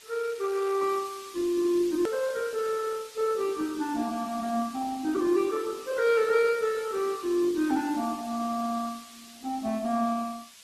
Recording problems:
lossy codec; Opus, log-spectral distance 5 dB, nothing above 13.1 kHz
background hiss; slope +3 dB per octave, SNR 20 dB
click at an edit; at 2 s

